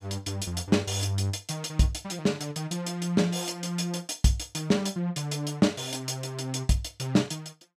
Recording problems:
none

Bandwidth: 14.5 kHz